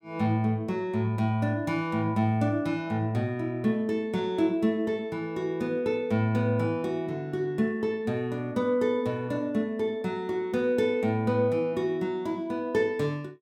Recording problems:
none

